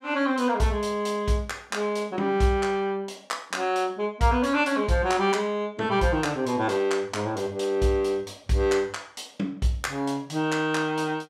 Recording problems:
none

